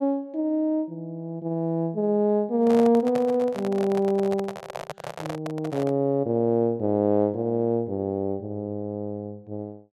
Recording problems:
handling noise; from 2.5 to 6 s; peak -5 dB vs average level

